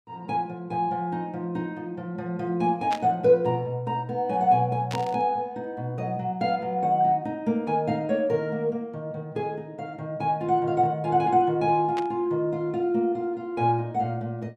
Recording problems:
burst of static; at 3 s, at 5 s and at 12 s; peak -5 dB vs average level

